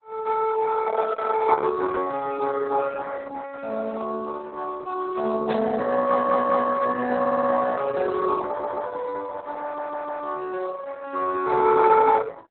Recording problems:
codec artefacts; Speex, then Opus, log-spectral distance 5 dB, nothing above 4 kHz
static burst; at 5.5 s; peak -7 dB vs average level
stutter; 4 times, first at 6 s

